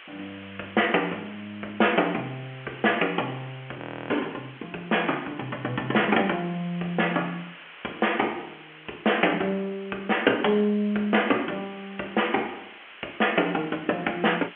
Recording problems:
telephone audio; 300 Hz to 3.2 kHz, G.711
hiss; SNR 19 dB
audio freezing; at 4 s

